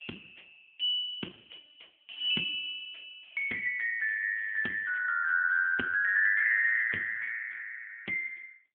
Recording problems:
telephone audio; 190 Hz to 3.3 kHz, AMR-NB

